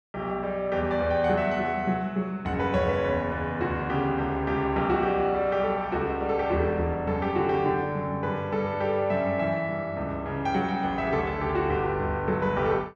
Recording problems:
none

